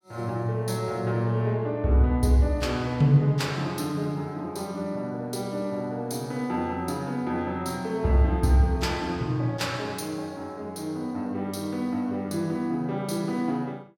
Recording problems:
none

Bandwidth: 17.5 kHz